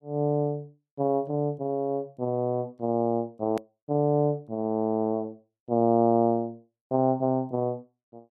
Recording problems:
edit click; at 3.5 s

